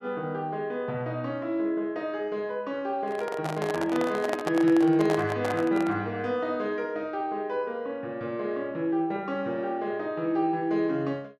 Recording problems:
microphone handling noise; from 3 to 6 s; peak +1 dB vs average level

